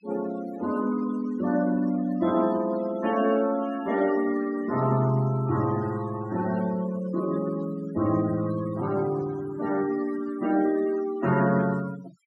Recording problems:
noise reduction artefacts; signal-to-artefact ratio 16 dB

